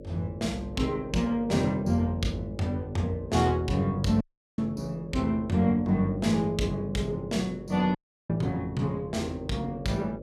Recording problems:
electrical hum; 50 Hz, harmonics up to 600 Hz, SNR 14 dB
audio cutting out; at 4 s and at 8 s

